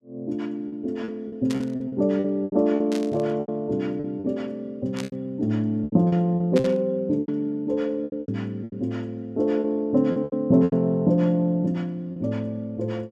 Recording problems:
lost packets; 11% of the sound replaced, filled with repeated pitch periods
burst of static; 4 times, first at 1.5 s; peak -5 dB vs average level

